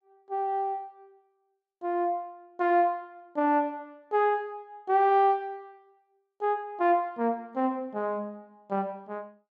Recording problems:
none

